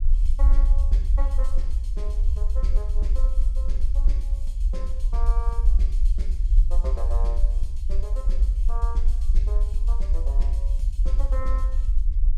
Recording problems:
rumble; below 48 Hz, SNR -16 dB

